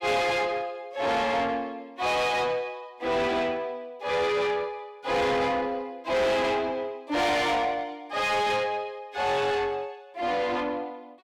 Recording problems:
distortion; soft clipping, signal-to-distortion ratio 7 dB

